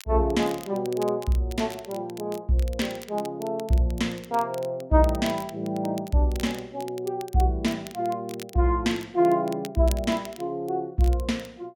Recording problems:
crackling; vinyl, SNR 19 dB

